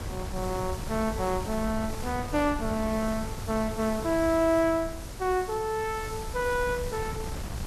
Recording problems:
background hiss; slope 0 dB per octave, SNR 15 dB
wind noise; below 220 Hz, SNR 9 dB

